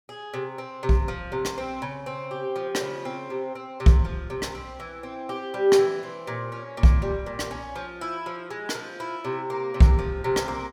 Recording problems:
none

